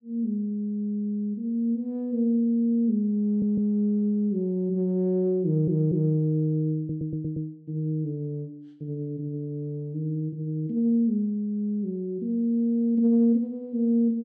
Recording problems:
audio stuttering; at 3.5 s, at 5.5 s and at 7 s

